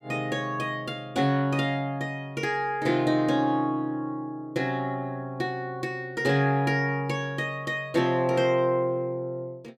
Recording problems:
none

